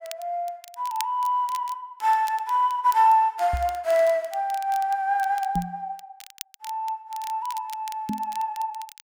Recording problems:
crackle; vinyl, SNR 19 dB
microphone bump; at 3.5 s, at 5.5 s and at 8 s; peak 0 dB vs average level

